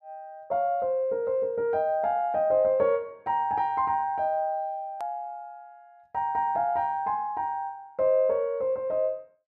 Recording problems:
hard cut with a click; at 5 s

